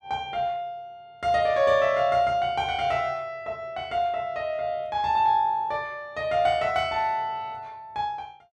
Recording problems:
none

